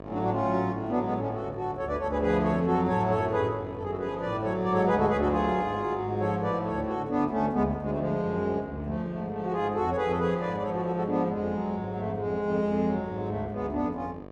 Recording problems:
hum; 50 Hz, harmonics up to 1.9 kHz, SNR 17 dB

